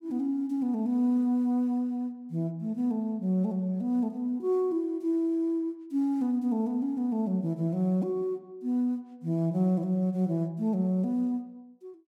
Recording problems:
none

